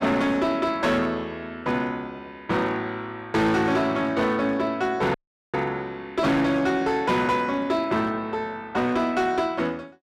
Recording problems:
distortion; hard clipping, signal-to-distortion ratio 12 dB
audio cutting out; at 5 s

